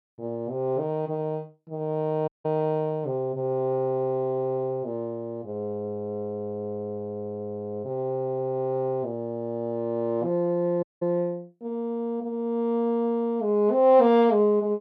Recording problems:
audio cutting out; at 2.5 s and at 11 s

